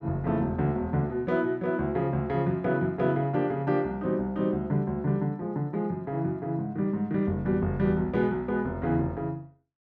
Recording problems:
none

